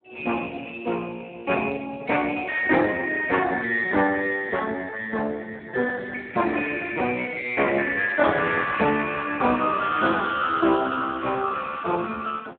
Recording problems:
telephone audio; 260 Hz to 2.2 kHz, Speex

